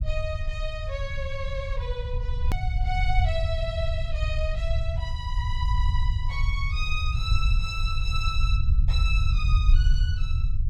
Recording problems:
low-frequency rumble; below 76 Hz, SNR -6 dB
hard cut with a click; at 2.5 s

